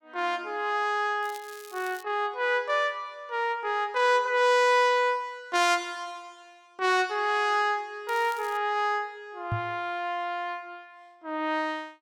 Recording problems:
crackle; at 1 s and at 8 s; loose cable, SNR 22 dB
microphone bump; at 9.5 s; peak -1 dB vs average level

